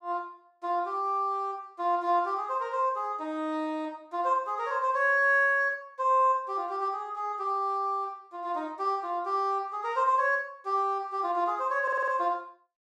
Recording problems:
audio stuttering; at 12 s

